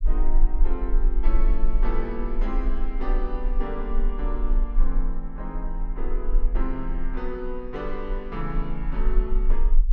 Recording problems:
low-frequency rumble; below 34 Hz, strongest tone 18 Hz, SNR -6 dB

